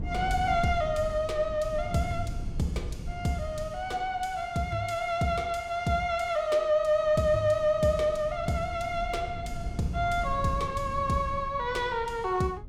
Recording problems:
wind on the microphone; below 140 Hz, SNR 11 dB

